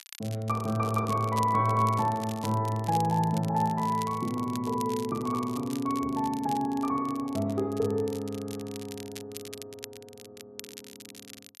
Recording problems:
crackle; vinyl, SNR 17 dB

